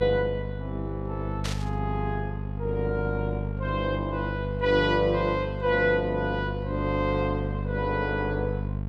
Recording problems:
hum; 50 Hz, harmonics up to 500 Hz, SNR 4 dB
static burst; at 1.5 s; peak -1 dB vs average level

